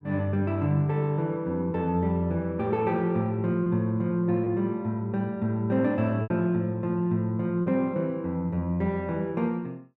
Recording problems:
packet loss; 1.6% of the sound replaced, filled with repeated pitch periods

